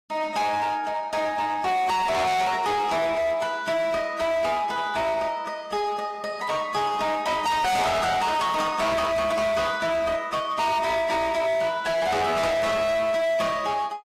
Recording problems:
codec artefacts; AAC, log-spectral distance 3 dB, nothing above 15.1 kHz
distorted audio; hard clipping, signal-to-distortion ratio 6 dB

